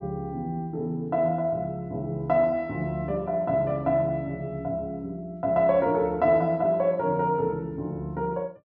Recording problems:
none

